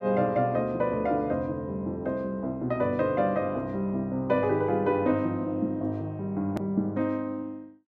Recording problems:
hard cut with a click; at 6.5 s

